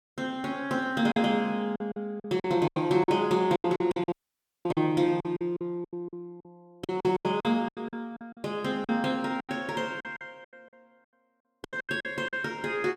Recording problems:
packet loss; 16% of the sound replaced, filled with silence
dropout; at 4 s for 0.5 s

